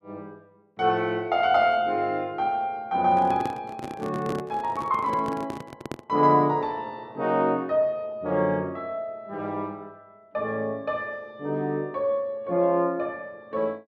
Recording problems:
handling noise; from 3 to 6 s; peak -3 dB vs average level

